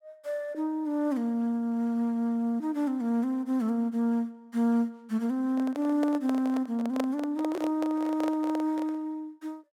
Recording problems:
handling noise; from 5.5 to 9 s; peak +1 dB vs average level

